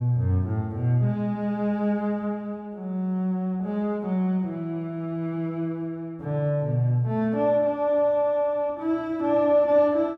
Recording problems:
none

